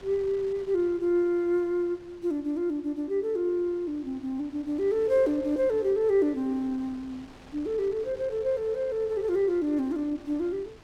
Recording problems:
wind noise; below 1.5 kHz, SNR 23 dB

